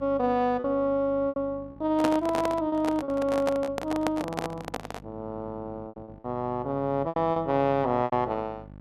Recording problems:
electrical hum; 50 Hz, harmonics up to 900 Hz, SNR 20 dB
packet loss; 8% of the sound replaced, filled with repeated pitch periods
microphone handling noise; from 2 to 5 s; peak +3 dB vs average level

